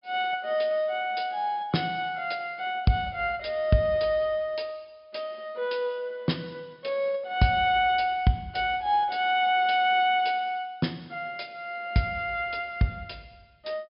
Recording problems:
treble cut off; nothing above 5.5 kHz

